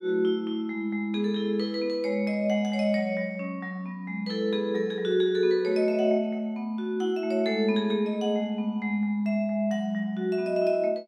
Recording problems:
none

